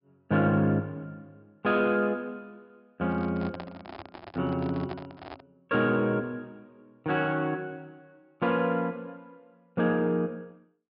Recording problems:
low-pass filter; nothing above 5.5 kHz
microphone handling noise; from 3 to 5.5 s; peak -6 dB vs average level

